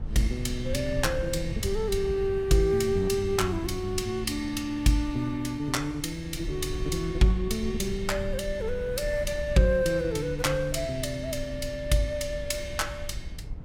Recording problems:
low-frequency rumble; below 92 Hz, SNR 10 dB

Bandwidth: 17 kHz